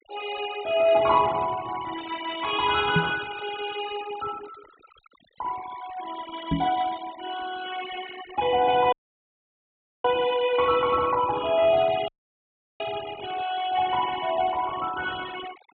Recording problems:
treble missing; nothing above 4 kHz
denoising artefacts; signal-to-artefact ratio 15 dB
microphone bump; at 3 s and at 6.5 s; peak +5 dB vs average level
audio cutting out; at 9 s for 1 s and at 12 s for 0.5 s

